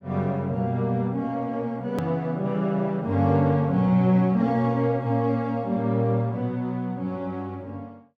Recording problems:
hard cut with a click; at 2 s

